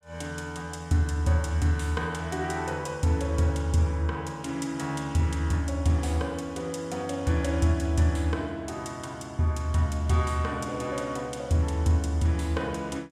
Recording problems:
none

